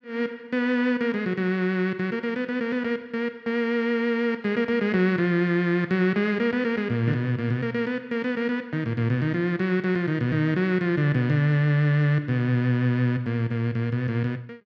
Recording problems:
none

